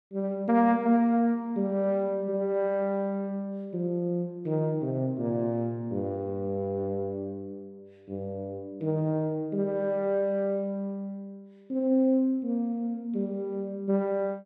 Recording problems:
none

